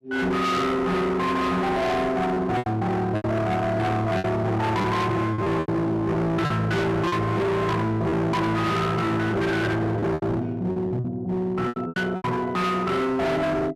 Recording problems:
distorted audio; hard clipping, signal-to-distortion ratio 6 dB
lost packets; 7% of the sound replaced, filled with repeated pitch periods

